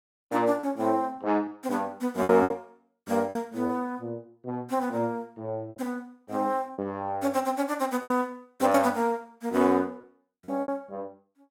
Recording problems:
lost packets; 7% of the sound replaced, filled with repeated pitch periods

